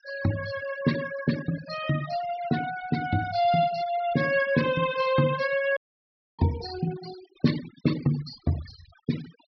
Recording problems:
treble cut off; nothing above 5.5 kHz
noise reduction artefacts; signal-to-artefact ratio 14 dB
dropout; at 6 s for 0.5 s

